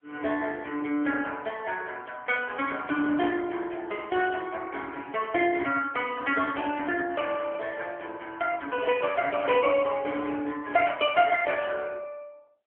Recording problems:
phone line; 240 Hz to 3.3 kHz, AMR-NB

